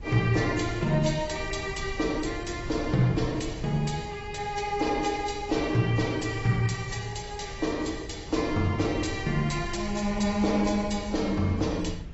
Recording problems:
lossy compression; AAC, log-spectral distance 4 dB, nothing above 7.6 kHz
wind noise; below 110 Hz, SNR 14 dB

